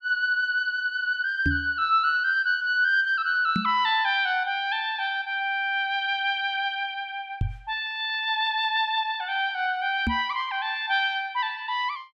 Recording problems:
knock on the microphone; 4 times, first at 1.5 s; peak +2 dB vs average level

